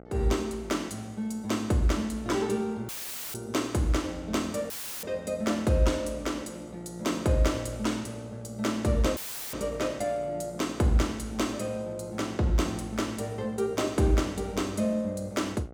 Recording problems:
hum; 60 Hz, harmonics up to 1.5 kHz, SNR 19 dB
dropout; at 3 s, at 4.5 s and at 9 s; filled with static

